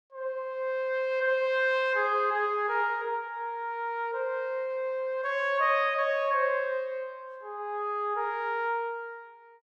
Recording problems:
none

